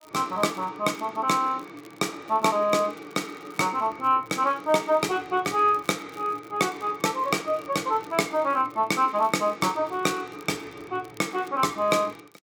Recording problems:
crackling; vinyl, SNR 29 dB

